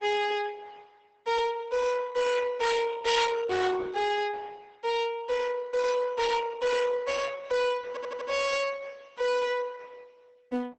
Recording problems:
codec artefacts; Opus, log-spectral distance 4 dB, nothing above 8 kHz
distorted audio; hard clipping, signal-to-distortion ratio 7 dB
stutter; at 8 s

